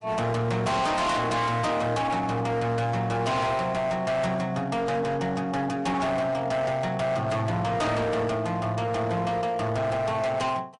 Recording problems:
lossy compression; MP3, log-spectral distance 2 dB, nothing above 11 kHz
distortion; hard clipping, signal-to-distortion ratio 7 dB

